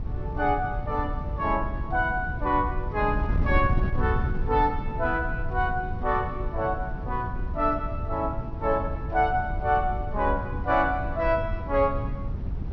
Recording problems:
low-pass filter; nothing above 6.2 kHz
wind on the microphone; below 110 Hz, SNR 5 dB

